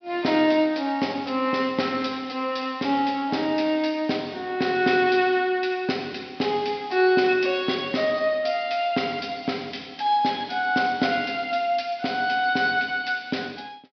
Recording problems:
low-pass filter; nothing above 5.5 kHz

